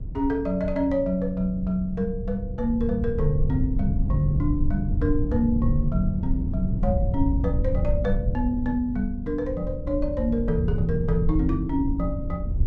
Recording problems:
rumble; below 100 Hz, SNR 2 dB

